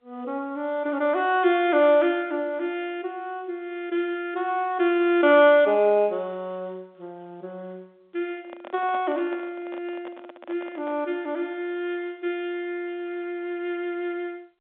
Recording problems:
telephone audio; 240 Hz to 3.7 kHz, G.711
handling noise; from 8.5 to 11 s; peak -10 dB vs average level

